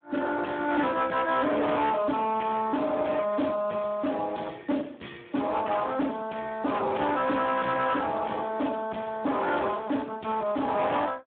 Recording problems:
phone line; 150 Hz to 3.6 kHz, Speex
distorted audio; hard clipping, signal-to-distortion ratio 8 dB

